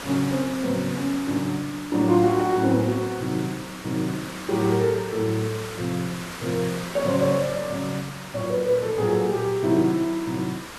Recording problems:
hiss; SNR 12 dB

